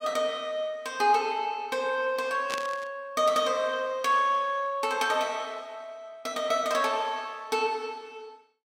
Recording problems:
static burst; at 2.5 s; peak -1 dB vs average level

